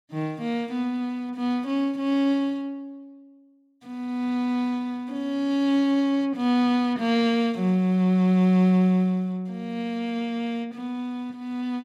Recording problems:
none

